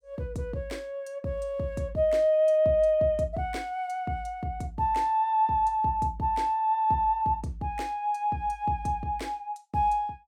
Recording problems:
none

